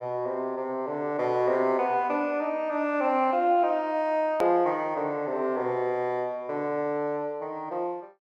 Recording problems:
click at an edit; at 4.5 s

